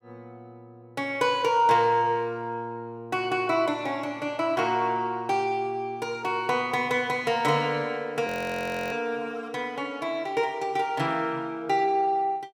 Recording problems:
audio freezing; at 8.5 s for 0.5 s

